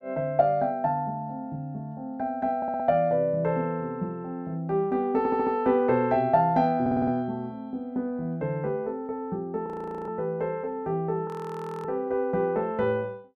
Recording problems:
stutter; at 2.5 s, at 5 s and at 7 s
frozen audio; at 9.5 s and at 11 s for 0.5 s

